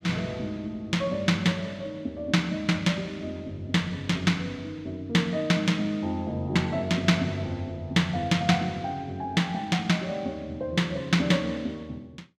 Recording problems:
none

